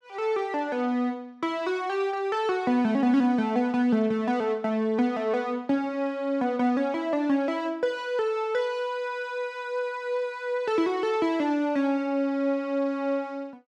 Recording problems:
none

